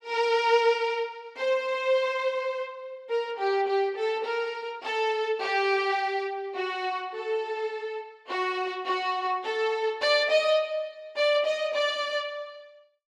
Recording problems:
none

